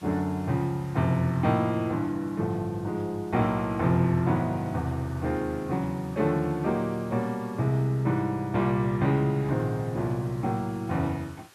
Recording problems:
background hiss; slope -2 dB per octave, SNR 26 dB

